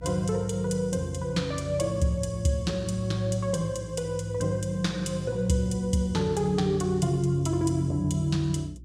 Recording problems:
electrical hum; 60 Hz, harmonics up to 360 Hz, SNR 18 dB

